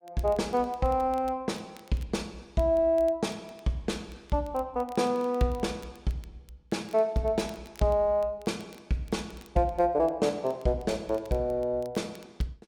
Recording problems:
crackle; vinyl, SNR 27 dB

